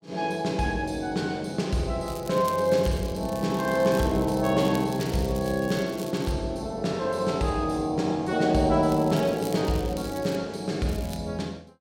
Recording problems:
crackle; from 2 to 6.5 s, from 9 to 10 s and at 11 s; loose cable, SNR 18 dB

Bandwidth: 16 kHz